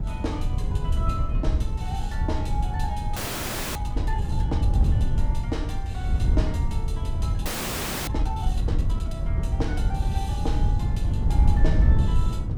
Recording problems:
wind on the microphone; below 96 Hz, SNR -10 dB
frozen audio; at 3 s for 0.5 s and at 7.5 s for 0.5 s

